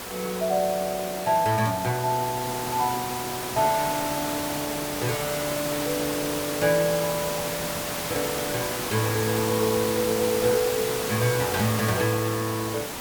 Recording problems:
hiss; slope -3 dB per octave, SNR 3 dB

